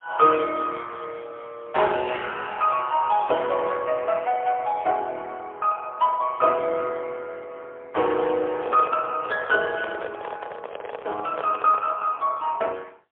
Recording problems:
telephone audio; 340 Hz to 3.4 kHz, AMR-NB, then MP3
microphone handling noise; from 8.5 to 12 s; peak -4 dB vs average level

